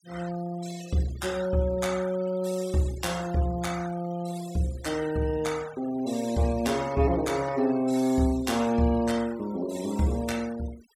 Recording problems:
noise reduction artefacts; signal-to-artefact ratio 17 dB

